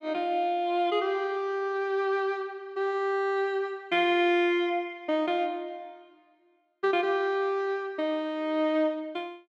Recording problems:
none

